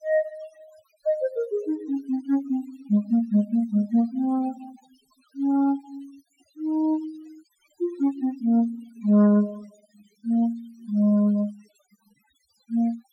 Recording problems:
denoising artefacts; signal-to-artefact ratio 25 dB

